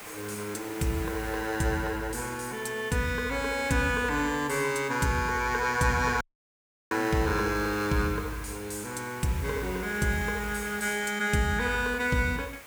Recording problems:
hiss; SNR 15 dB
dropout; at 6 s for 0.5 s

